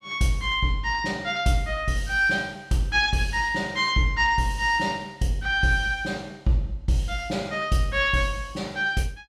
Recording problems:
none

